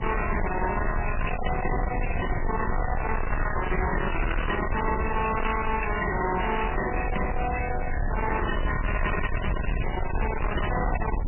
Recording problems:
codec artefacts; MP3, log-spectral distance 7 dB, nothing above 2.7 kHz
distorted audio; hard clipping, signal-to-distortion ratio 7 dB
low-frequency rumble; below 170 Hz, SNR 3 dB

